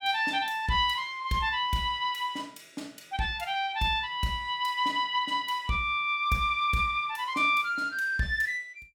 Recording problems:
none

